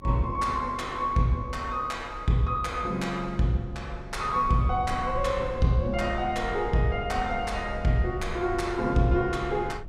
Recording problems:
rumble; below 96 Hz, SNR 13 dB

